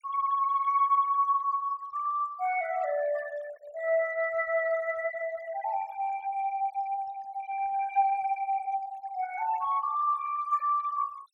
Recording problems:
denoising artefacts; signal-to-artefact ratio 20 dB

